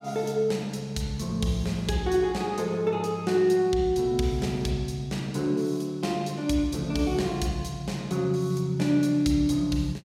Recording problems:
none

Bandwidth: 16 kHz